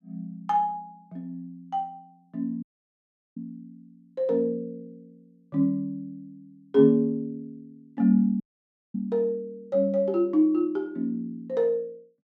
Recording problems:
dropout; at 2.5 s for 0.5 s and at 8.5 s for 0.5 s

